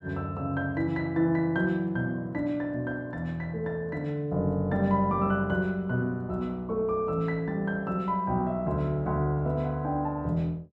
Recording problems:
none

